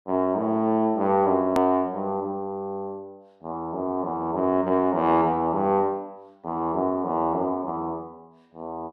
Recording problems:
click at an edit; at 1.5 s

